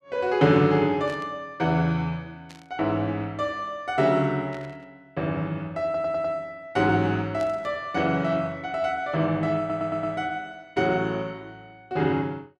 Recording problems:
static burst; 4 times, first at 1 s; peak -14 dB vs average level
stutter; at 6 s and at 9.5 s

